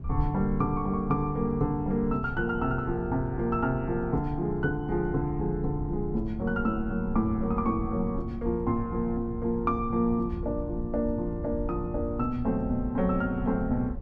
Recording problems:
wind on the microphone; below 110 Hz, SNR 9 dB

